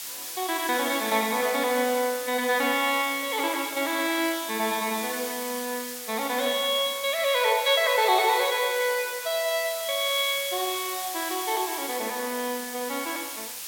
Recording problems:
background hiss; slope +3 dB per octave, SNR 8 dB

